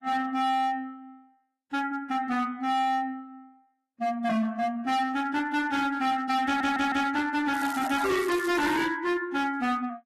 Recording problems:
lossy codec; AAC, log-spectral distance 2 dB, nothing above 13.1 kHz
distorted audio; hard clipping, signal-to-distortion ratio 8 dB
audio stuttering; at 6.5 s
crackling; from 7.5 to 9 s; loose cable, SNR 16 dB

